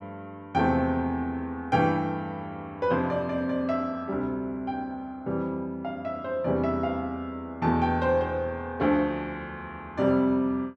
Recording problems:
none

